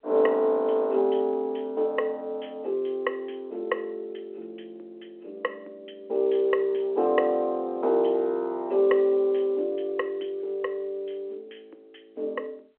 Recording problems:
phone line; 320 Hz to 3.2 kHz, G.711

